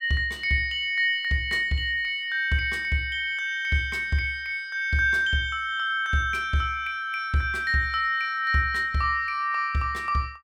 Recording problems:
none

